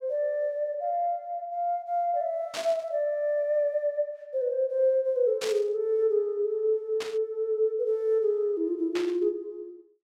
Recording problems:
burst of static; 4 times, first at 2.5 s; peak -3 dB vs average level

